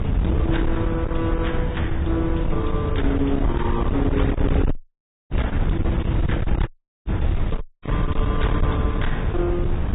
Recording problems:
low-pass filter; nothing above 3.8 kHz
codec artefacts; AAC, then MP3, log-spectral distance 2 dB
distortion; hard clipping, signal-to-distortion ratio 7 dB
wind noise; below 150 Hz, SNR -2 dB
dropout; at 5 s for 0.5 s, at 6.5 s and at 7.5 s

